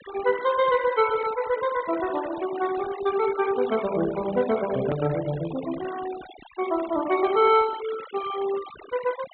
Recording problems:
treble cut off; nothing above 4 kHz
denoising artefacts; signal-to-artefact ratio 14 dB
edit click; at 5 s

